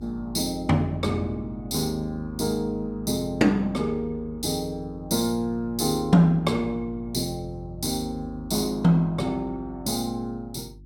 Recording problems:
hum; 50 Hz, harmonics up to 350 Hz, SNR 18 dB

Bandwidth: 17.5 kHz